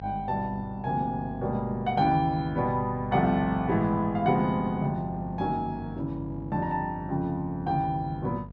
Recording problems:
mains hum; 50 Hz, harmonics up to 750 Hz, SNR 14 dB

